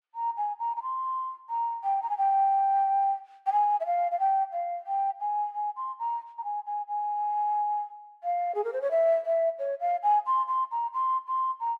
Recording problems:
none

